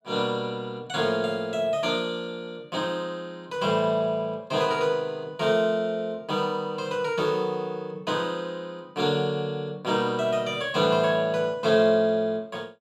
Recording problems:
none

